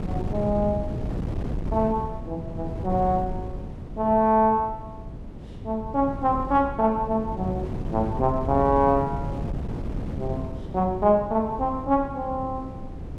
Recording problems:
wind noise; below 230 Hz, SNR 9 dB

